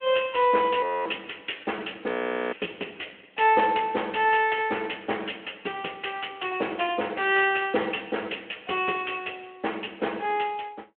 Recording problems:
phone line; 260 Hz to 3.4 kHz, Speex
frozen audio; at 1 s and at 2 s

